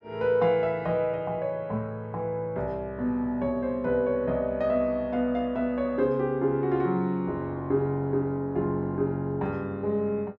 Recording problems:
none

